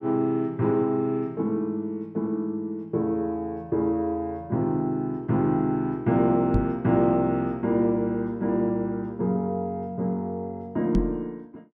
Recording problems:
microphone bump; at 6.5 s and at 11 s; peak +6 dB vs average level

